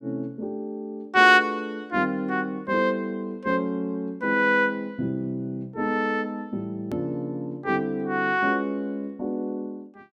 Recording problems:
click at an edit; at 7 s

